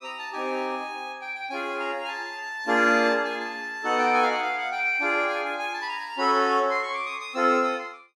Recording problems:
none

